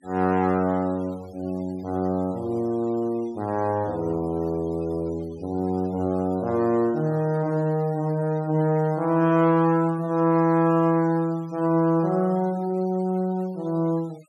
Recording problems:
noise reduction artefacts; signal-to-artefact ratio 27 dB

